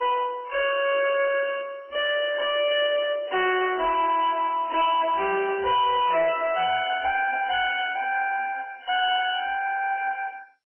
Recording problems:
lossy compression; MP3, then MP2, log-spectral distance 5 dB, nothing above 3 kHz
distortion; soft clipping, signal-to-distortion ratio 9 dB

